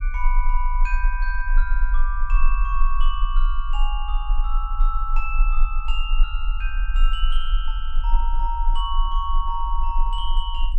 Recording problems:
low-frequency rumble; below 34 Hz, strongest tone 24 Hz, SNR -5 dB

